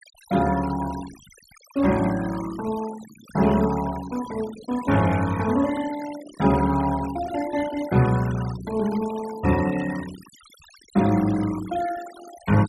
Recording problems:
denoising artefacts; signal-to-artefact ratio 15 dB

